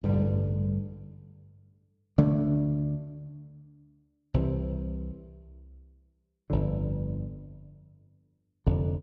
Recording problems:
none

